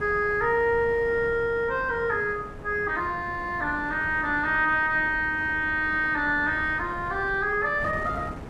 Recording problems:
wind on the microphone; below 560 Hz, SNR 15 dB

